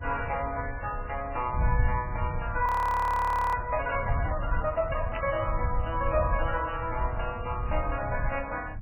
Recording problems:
lossy codec; MP3, log-spectral distance 3 dB
low-frequency rumble; below 90 Hz, SNR 4 dB
frozen audio; at 2.5 s for 1 s
burst of static; at 5 s; peak -4 dB vs average level

